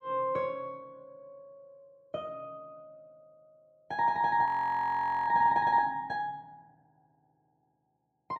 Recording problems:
audio freezing; at 4.5 s for 1 s

